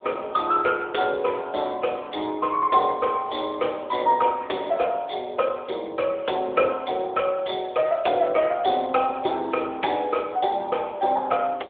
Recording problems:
telephone audio; 320 Hz to 3.5 kHz, AMR-NB

